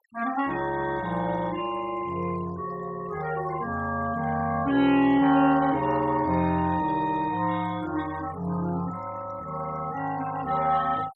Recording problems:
denoising artefacts; signal-to-artefact ratio 18 dB

